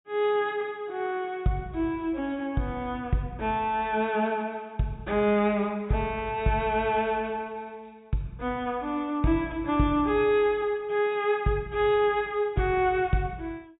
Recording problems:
treble missing; nothing above 4 kHz

